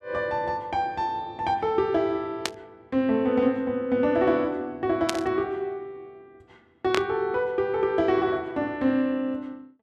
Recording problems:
burst of static; at 2.5 s, at 5 s and at 7 s; peak +3 dB vs average level

